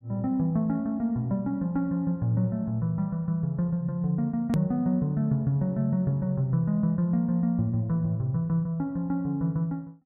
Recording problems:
hard cut with a click; at 4.5 s

